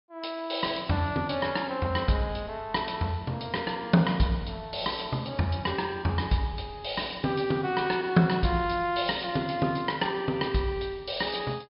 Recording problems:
treble missing; nothing above 5.5 kHz

